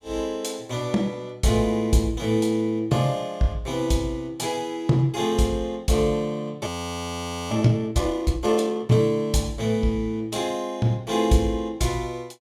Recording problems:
frozen audio; at 6.5 s for 1 s

